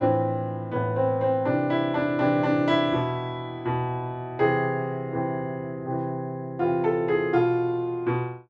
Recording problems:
none

